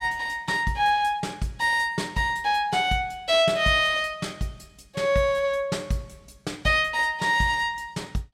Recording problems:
none

